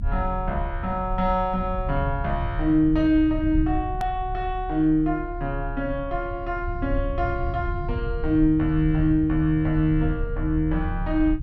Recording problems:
low-frequency rumble; below 84 Hz, strongest tone 36 Hz, SNR 8 dB
click at an edit; at 4 s

